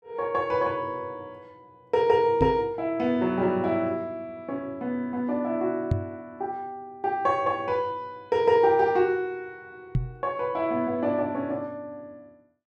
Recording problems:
microphone bump; at 2.5 s, at 6 s and at 10 s; peak +6 dB vs average level

